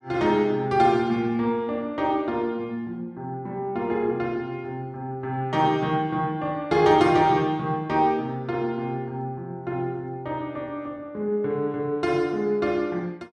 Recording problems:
none

